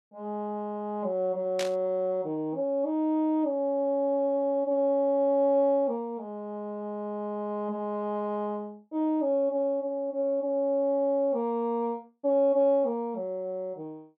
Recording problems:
static burst; at 1.5 s; peak -2 dB vs average level

